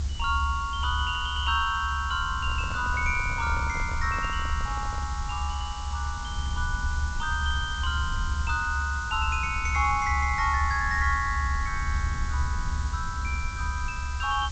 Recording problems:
treble cut off; nothing above 8 kHz
hiss; slope +1 dB per octave, SNR 14 dB
low-frequency rumble; below 72 Hz, strongest tone 70 Hz, SNR 3 dB
microphone handling noise; from 2.5 to 5 s; peak -9 dB vs average level

